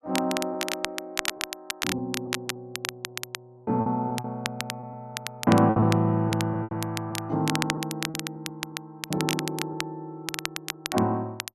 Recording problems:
crackle; vinyl, SNR 6 dB
packet loss; 6% of the sound replaced, filled with repeated pitch periods

